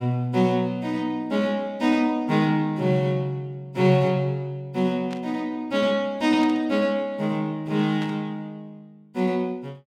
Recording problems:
static burst; at 5 s, at 6.5 s and at 8 s; peak -11 dB vs average level

